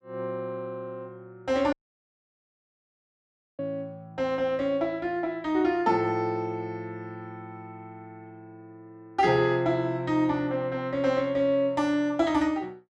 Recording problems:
dropout; at 1.5 s for 2 s

